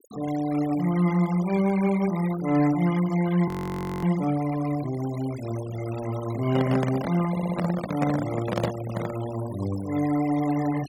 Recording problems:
noise reduction artefacts; signal-to-artefact ratio 15 dB
frozen audio; at 3.5 s for 0.5 s
handling noise; from 6.5 to 9 s; peak +3 dB vs average level
stutter; at 7.5 s

